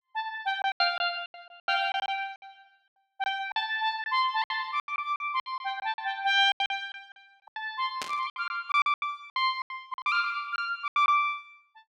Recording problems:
packet loss; 16% of the sound replaced, filled with silence
static burst; at 8 s; peak -2 dB vs average level

